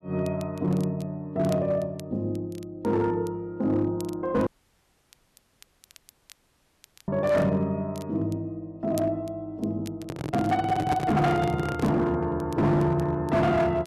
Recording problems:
distorted audio; hard clipping, signal-to-distortion ratio 11 dB
crackling; vinyl, SNR 25 dB
audio cutting out; at 4.5 s for 2.5 s
microphone handling noise; from 10 to 12 s; peak +2 dB vs average level

